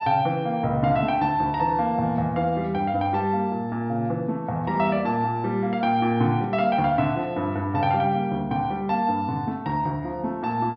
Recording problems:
treble cut off; nothing above 5.5 kHz

